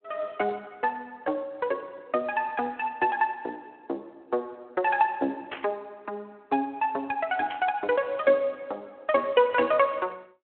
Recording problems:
telephone audio; 240 Hz to 3.3 kHz, Speex
burst of static; at 5.5 s and at 7.5 s; peak -3 dB vs average level

